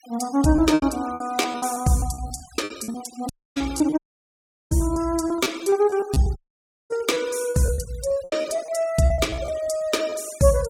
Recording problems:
noise reduction artefacts; signal-to-artefact ratio 19 dB
packet loss; 17% of the sound replaced, filled with repeated pitch periods
audio cutting out; at 3.5 s, at 4 s for 0.5 s and at 6.5 s for 0.5 s

